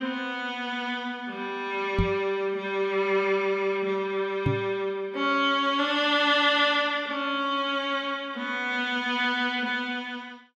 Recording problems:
knock on the microphone; at 2 s and at 4.5 s; peak +4 dB vs average level

